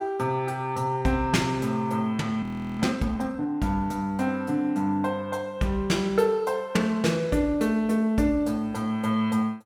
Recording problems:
audio freezing; at 2.5 s

